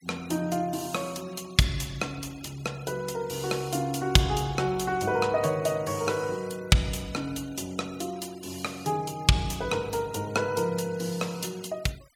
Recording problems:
denoising artefacts; signal-to-artefact ratio 22 dB

